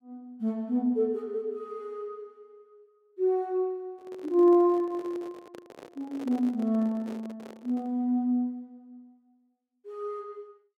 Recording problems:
microphone handling noise; from 4 to 8 s; peak -9 dB vs average level

